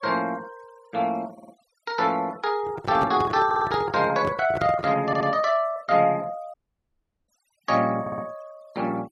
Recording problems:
noise reduction artefacts; signal-to-artefact ratio 26 dB
audio stuttering; 4 times, first at 1.5 s
handling noise; from 2.5 to 5 s; peak -2 dB vs average level
dropout; at 6.5 s for 0.5 s

